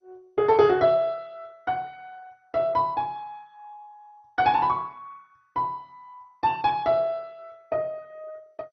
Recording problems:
lossy compression; MP2, log-spectral distance 2 dB, nothing above 5.7 kHz

